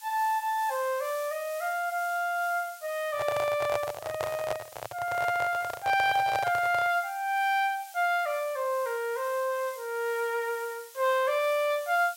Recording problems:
background hiss; slope +6 dB per octave, SNR 18 dB
microphone handling noise; from 3 to 7 s; peak 0 dB vs average level

